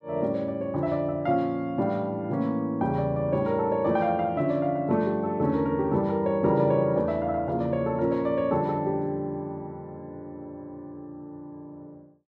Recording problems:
none

